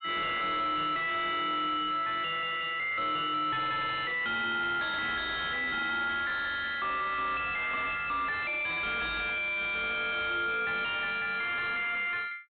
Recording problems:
treble cut off; nothing above 4 kHz
distortion; soft clipping, signal-to-distortion ratio 5 dB

